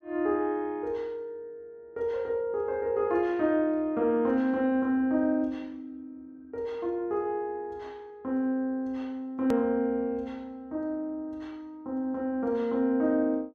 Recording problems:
hard cut with a click; at 9.5 s

